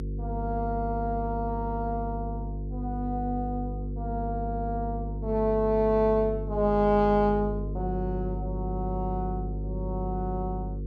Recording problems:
electrical hum; 50 Hz, harmonics up to 500 Hz, SNR 5 dB

